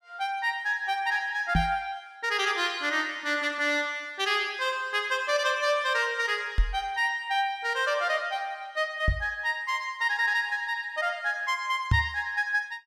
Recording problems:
microphone bump; 4 times, first at 1.5 s; peak +7 dB vs average level

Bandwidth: 14.5 kHz